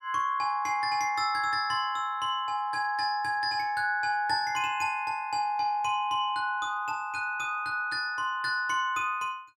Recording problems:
none

